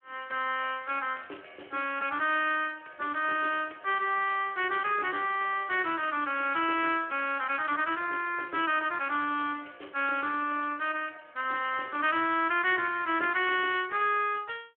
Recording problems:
telephone audio; 280 Hz to 3.3 kHz, Speex

